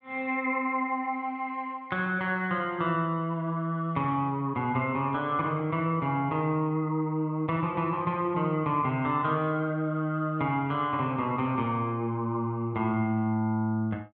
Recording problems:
none

